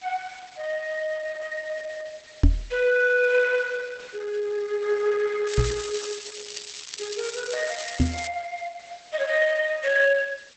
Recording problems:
lossy compression; Opus, log-spectral distance 8 dB, nothing above 8 kHz
hiss; slope +2 dB per octave, SNR 23 dB
knock on the microphone; at 2.5 s, at 5.5 s and at 8 s; peak +9 dB vs average level
crackling; from 5.5 to 8.5 s; loose cable, SNR 11 dB

